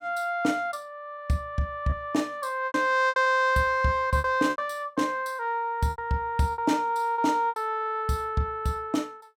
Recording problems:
lost packets; 7% of the sound replaced, filled with repeated pitch periods

